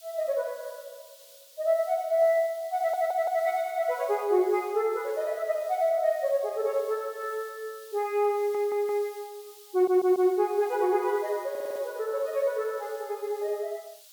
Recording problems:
background hiss; SNR 22 dB
stutter; 4 times, first at 3 s

